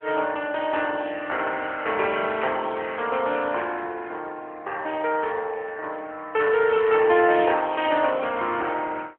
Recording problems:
telephone audio; 320 Hz to 3.2 kHz, AMR-NB

